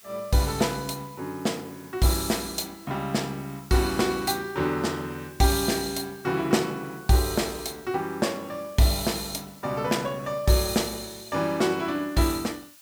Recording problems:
background hiss; slope +2 dB per octave, SNR 22 dB

